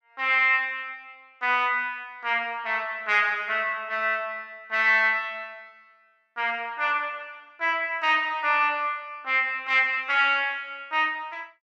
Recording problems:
none

